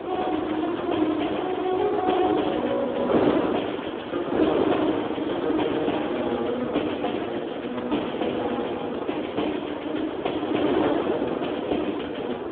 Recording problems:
telephone audio; 240 Hz to 3.5 kHz, Speex
wind noise; below 730 Hz, SNR 2 dB

